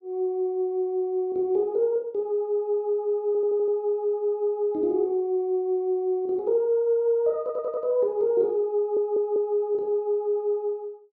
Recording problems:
audio stuttering; at 3.5 s, at 7.5 s and at 9 s

